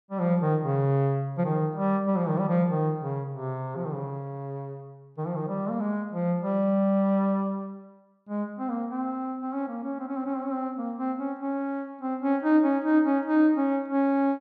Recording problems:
none

